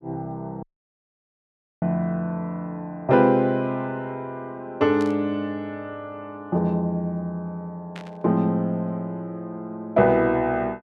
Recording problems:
audio cutting out; at 0.5 s for 1 s
burst of static; at 5 s and at 8 s; peak -11 dB vs average level

